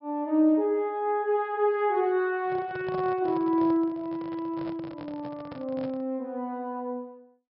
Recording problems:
treble missing; nothing above 5.3 kHz
microphone handling noise; from 2.5 to 6 s; peak -7 dB vs average level

